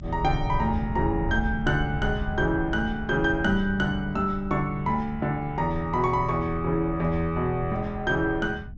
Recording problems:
treble cut off; nothing above 7.7 kHz
rumble; below 110 Hz, SNR 9 dB

